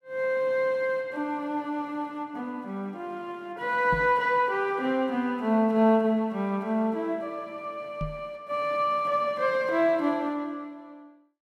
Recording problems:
microphone bump; at 4 s and at 8 s; peak -2 dB vs average level

